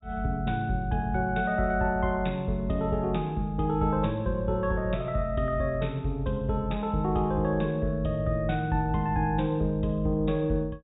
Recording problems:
treble cut off; nothing above 4 kHz

